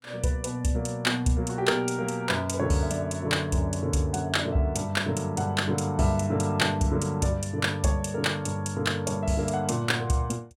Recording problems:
none

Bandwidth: 16.5 kHz